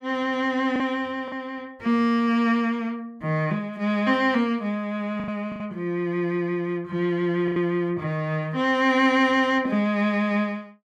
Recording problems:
lost packets; 3% of the sound replaced, filled with the last packet

